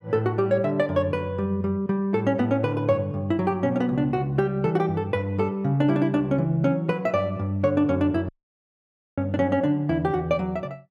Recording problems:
dropout; at 8.5 s for 1 s

